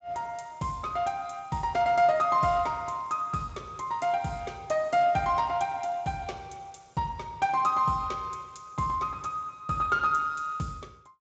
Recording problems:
codec artefacts; Speex, log-spectral distance 3 dB, nothing above 7.6 kHz

